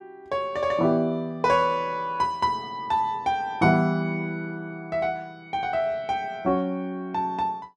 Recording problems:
none

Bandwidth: 12 kHz